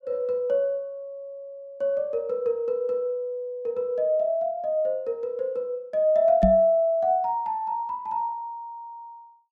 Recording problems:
microphone thump; at 6.5 s; peak +5 dB vs average level

